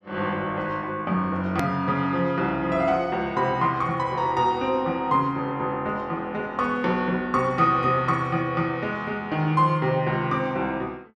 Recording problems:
hard cut with a click; at 1.5 s

